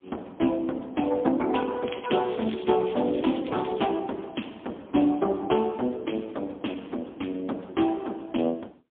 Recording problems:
phone line; 190 Hz to 3.4 kHz, AMR-NB, then MP3
crackle; from 2 to 4 s; loose cable, SNR 17 dB

